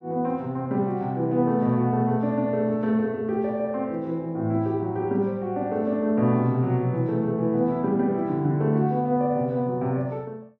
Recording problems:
none

